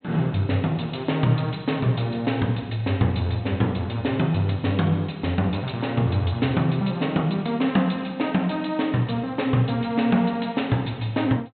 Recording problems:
low-pass filter; nothing above 4 kHz

